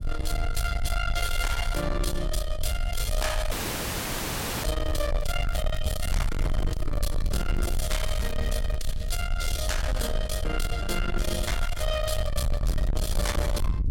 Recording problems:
distortion; soft clipping, signal-to-distortion ratio 7 dB
low-frequency rumble; below 70 Hz, SNR 1 dB
dropout; at 3.5 s for 1 s
crackling; from 4.5 to 9 s and from 11 to 13 s; loose cable, SNR 18 dB

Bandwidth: 16.5 kHz